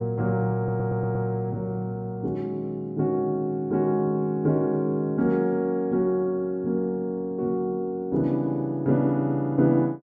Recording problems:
stutter; at 0.5 s

